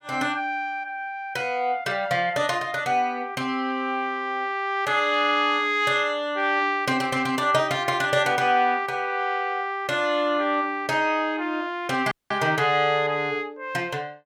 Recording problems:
audio cutting out; at 12 s

